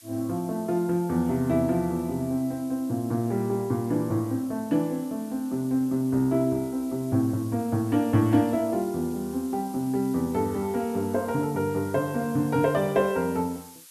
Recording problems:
hiss; slope +4 dB per octave, SNR 21 dB

